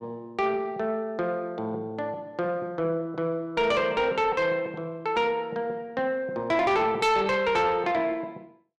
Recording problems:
distortion; soft clipping, signal-to-distortion ratio 11 dB

